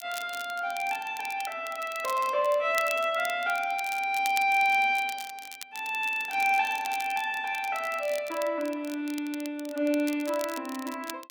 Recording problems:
crackle; vinyl, SNR 15 dB

